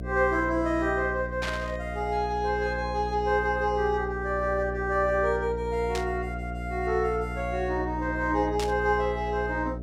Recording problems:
hum; 60 Hz, harmonics up to 720 Hz, SNR 8 dB
burst of static; at 1.5 s, at 6 s and at 8.5 s; peak -2 dB vs average level

